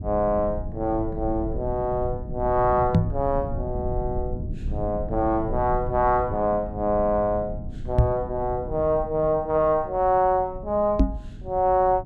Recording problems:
rumble; below 130 Hz, SNR 10 dB
microphone bump; at 3 s, at 8 s and at 11 s; peak +9 dB vs average level

